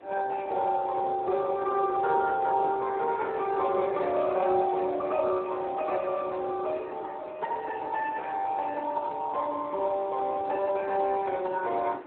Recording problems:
phone line; 240 Hz to 2.6 kHz, Speex
wind on the microphone; below 820 Hz, SNR 18 dB

